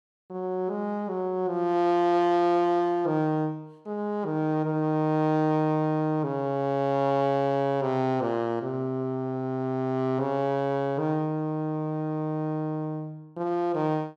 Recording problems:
none

